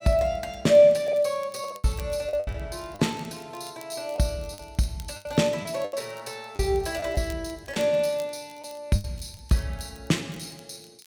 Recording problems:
crackle; vinyl, SNR 26 dB
packet loss; 7% of the sound replaced, filled with the last packet

